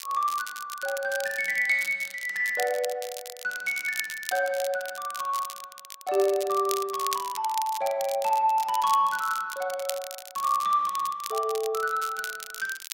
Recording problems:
crackling; vinyl, SNR 11 dB

